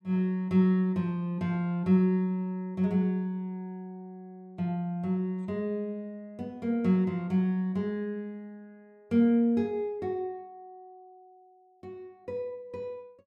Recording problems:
none

